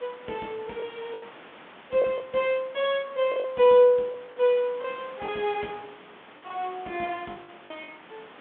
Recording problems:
telephone audio; 190 Hz to 3.6 kHz, G.726
background hiss; SNR 22 dB
lost packets; 8% of the sound replaced, filled with the last packet

